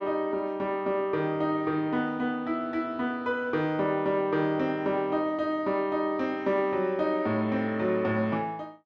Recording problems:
none

